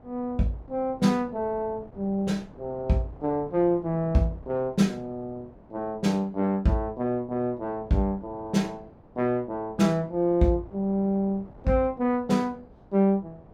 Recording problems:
wind noise; below 550 Hz, SNR 23 dB

